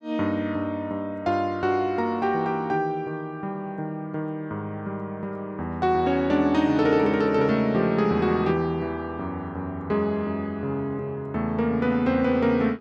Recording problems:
none

